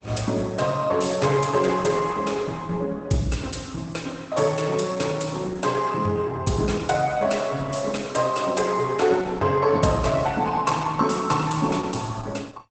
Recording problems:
lossy codec; Opus, log-spectral distance 5 dB, nothing above 8.2 kHz

